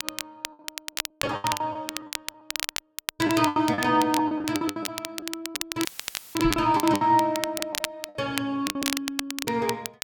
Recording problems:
crackle; vinyl, SNR 7 dB
packet loss; 16% of the sound replaced, filled with the last packet
audio cutting out; at 6 s for 0.5 s; filled with static
microphone bump; at 6.5 s; peak -1 dB vs average level

